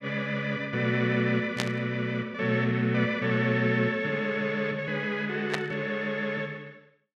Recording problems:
static burst; at 1.5 s and at 5.5 s; peak +3 dB vs average level

